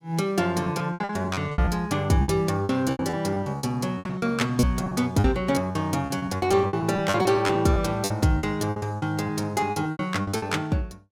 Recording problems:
lost packets; 17% of the sound replaced, filled with repeated pitch periods

